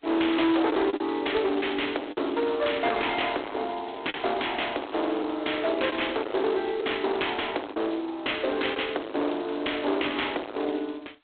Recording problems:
telephone audio; 260 Hz to 3.8 kHz, G.726
distorted audio; hard clipping, uneven, signal-to-distortion ratio 8 dB
lost packets; 3% of the sound replaced, filled with the last packet
crackle; from 1.5 to 2.5 s and from 4 to 5 s; loose cable, SNR 24 dB

